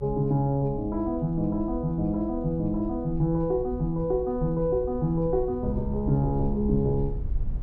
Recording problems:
low-frequency rumble; below 70 Hz, SNR 10 dB

